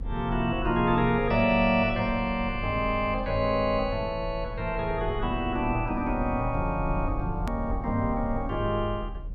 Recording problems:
low-frequency rumble; below 72 Hz, strongest tone 40 Hz, SNR 10 dB
hard cut with a click; at 7.5 s

